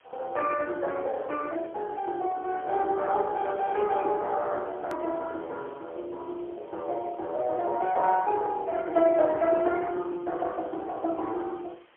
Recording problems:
telephone audio; 300 Hz to 3.2 kHz, AMR-NB, then MP3
hiss; SNR 30 dB
click at an edit; at 5 s

